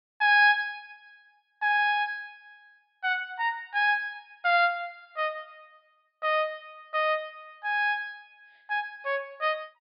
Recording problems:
treble missing; nothing above 5.1 kHz

